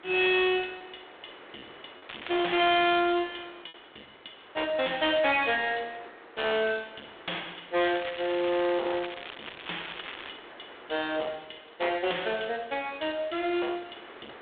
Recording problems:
telephone audio; 340 Hz to 3.7 kHz, G.726
distortion; hard clipping, signal-to-distortion ratio 9 dB
hiss; SNR 21 dB
lost packets; 1% of the sound replaced, filled with repeated pitch periods
crackle; at 2 s and from 8 to 10 s; loose cable, SNR 13 dB

